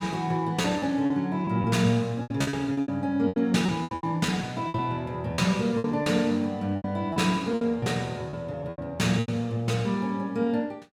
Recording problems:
lost packets; 12% of the sound replaced, filled with repeated pitch periods

